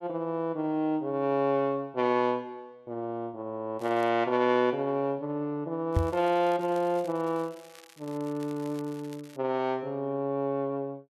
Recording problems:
crackling; at 4 s and from 6 to 9.5 s; loose cable, SNR 24 dB
knock on the microphone; at 6 s; peak +6 dB vs average level

